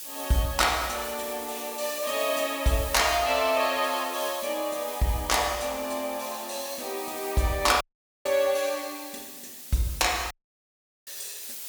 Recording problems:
hiss; SNR 11 dB
dropout; at 8 s and at 10 s for 1 s

